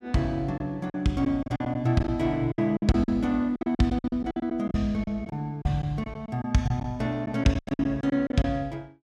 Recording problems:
lost packets; 14% of the sound replaced, filled with silence

